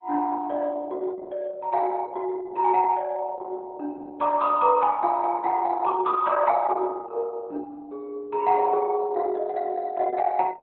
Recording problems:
lossy compression; Opus, log-spectral distance 3 dB, nothing above 4 kHz

